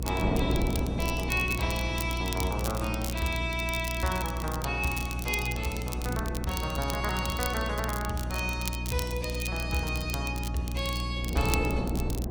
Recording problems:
hum; 60 Hz, harmonics up to 360 Hz, SNR 3 dB
wind noise; below 380 Hz, SNR 7 dB
crackling; vinyl, SNR 8 dB

